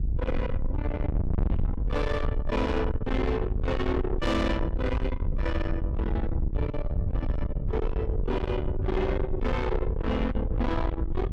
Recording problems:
distortion; soft clipping, signal-to-distortion ratio 7 dB
wind on the microphone; below 150 Hz, SNR 0 dB

